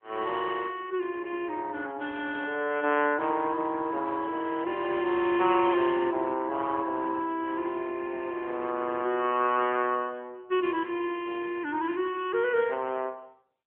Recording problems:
phone line; 260 Hz to 3.3 kHz, AMR-NB

